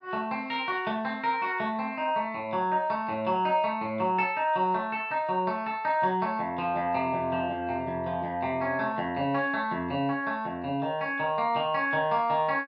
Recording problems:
none

